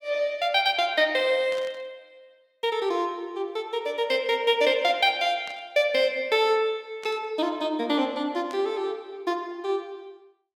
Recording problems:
static burst; 4 times, first at 1.5 s; peak -13 dB vs average level

